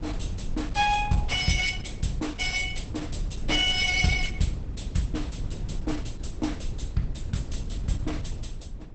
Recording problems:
lossy codec; Opus, log-spectral distance 4 dB, nothing above 8.2 kHz
low-frequency rumble; below 96 Hz, SNR 8 dB

